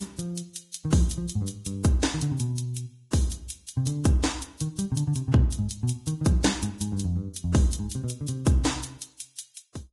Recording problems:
lossy codec; Vorbis, log-spectral distance 5 dB, nothing above 10.7 kHz

